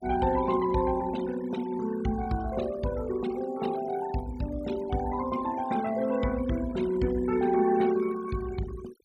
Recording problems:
denoising artefacts; signal-to-artefact ratio 16 dB

